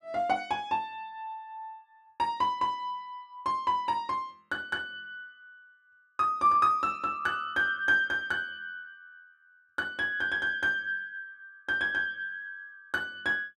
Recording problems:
none

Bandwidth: 12.5 kHz